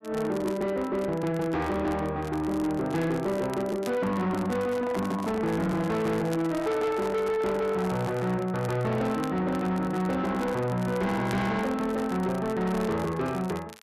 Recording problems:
distorted audio; soft clipping, signal-to-distortion ratio 10 dB
crackle; vinyl, SNR 20 dB
handling noise; from 4.5 to 8.5 s; peak -3 dB vs average level

